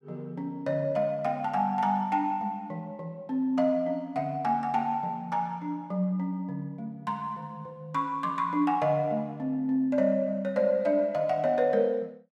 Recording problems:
none

